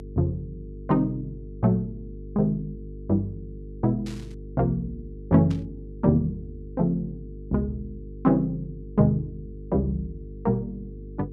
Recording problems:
hum; 50 Hz, harmonics up to 450 Hz, SNR 14 dB
burst of static; at 4 s and at 5.5 s; peak -13 dB vs average level

